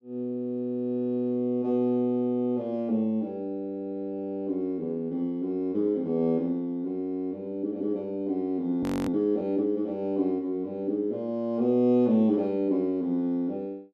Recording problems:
frozen audio; at 9 s

